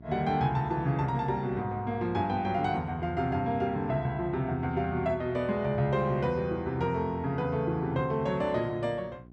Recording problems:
electrical hum; 60 Hz, harmonics up to 780 Hz, SNR 22 dB

